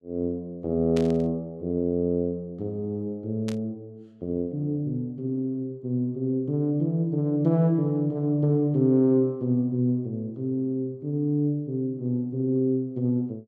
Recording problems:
burst of static; at 1 s and at 3.5 s; peak -8 dB vs average level

